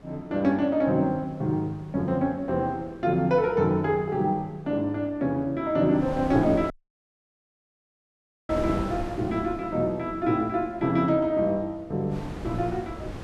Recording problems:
wind noise; below 500 Hz, SNR 14 dB
audio cutting out; at 6.5 s for 2 s

